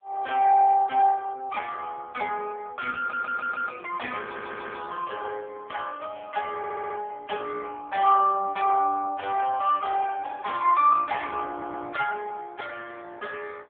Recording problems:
phone line; 320 Hz to 2.5 kHz, AMR-NB
audio stuttering; 4 times, first at 3 s

